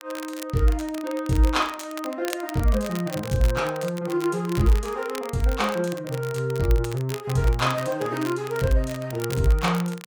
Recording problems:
crackle; vinyl, SNR 15 dB

